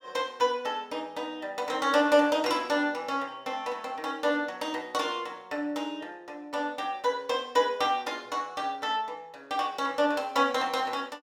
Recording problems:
none

